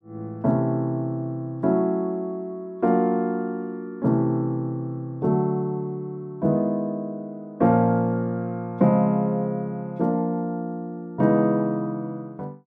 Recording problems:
none

